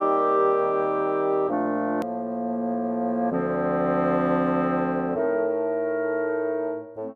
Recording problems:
edit click; at 2 s

